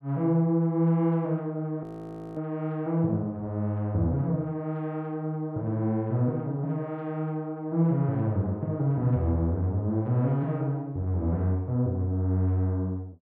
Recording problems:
frozen audio; at 2 s for 0.5 s

